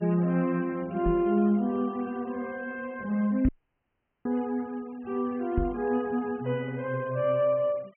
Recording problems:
treble missing; nothing above 3.1 kHz
denoising artefacts; signal-to-artefact ratio 26 dB
microphone thump; at 1 s, at 3.5 s and at 5.5 s; peak +3 dB vs average level
audio cutting out; at 3.5 s for 1 s

